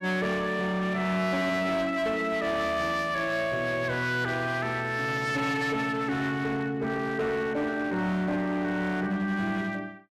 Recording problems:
distortion; hard clipping, signal-to-distortion ratio 10 dB

